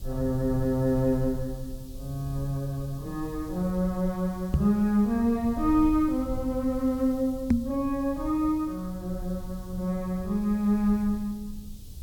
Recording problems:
hiss; SNR 25 dB
low-frequency rumble; below 80 Hz, SNR 14 dB
knock on the microphone; at 4.5 s and at 7.5 s; peak +8 dB vs average level

